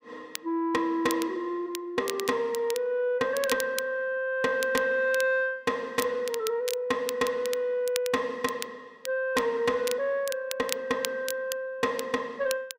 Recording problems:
distorted audio; soft clipping, signal-to-distortion ratio 7 dB
crackle; vinyl, SNR 11 dB

